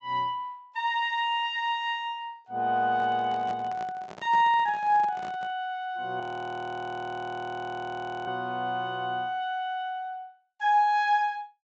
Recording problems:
treble missing; nothing above 8 kHz
handling noise; from 3 to 5.5 s; peak -9 dB vs average level
frozen audio; at 6 s for 2 s

